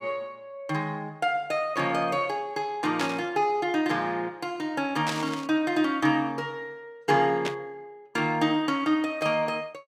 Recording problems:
static burst; at 3 s, at 5 s and at 7.5 s; peak 0 dB vs average level

